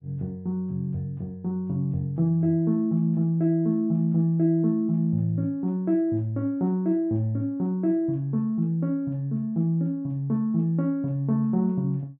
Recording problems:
treble missing; nothing above 4 kHz

